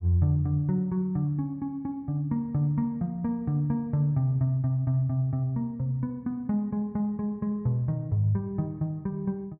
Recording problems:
none

